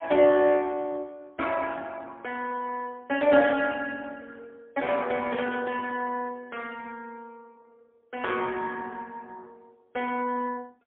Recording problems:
telephone audio; 260 Hz to 3.2 kHz, AMR-NB, then MP3

